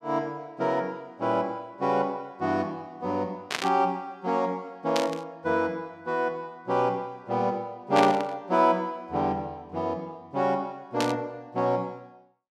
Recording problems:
burst of static; 4 times, first at 3.5 s; peak +4 dB vs average level

